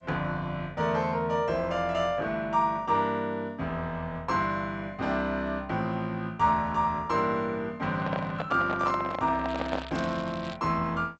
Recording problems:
lossy compression; G.722, log-spectral distance 2 dB, nothing above 7.3 kHz
handling noise; from 8 to 10 s; peak 0 dB vs average level
crackling; from 9.5 to 11 s; loose cable, SNR 17 dB

